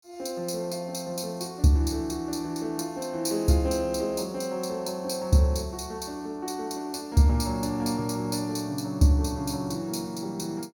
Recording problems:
none

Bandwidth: 18 kHz